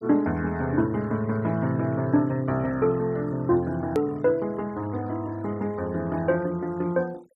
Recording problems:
noise reduction artefacts; signal-to-artefact ratio 25 dB
edit click; at 4 s

